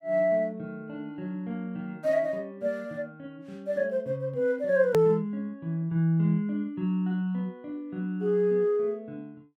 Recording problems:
hard cut with a click; at 5 s

